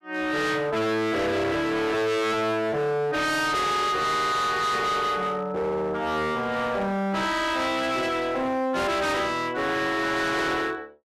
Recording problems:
distortion; hard clipping, signal-to-distortion ratio 6 dB

